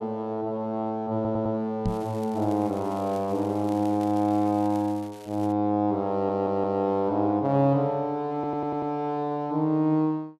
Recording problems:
audio stuttering; at 1 s, at 6 s and at 8.5 s
microphone bump; at 2 s; peak +2 dB vs average level
crackling; from 2 to 5.5 s; loose cable, SNR 25 dB

